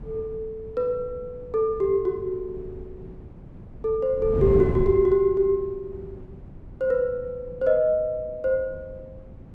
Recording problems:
wind noise; below 210 Hz, SNR 12 dB

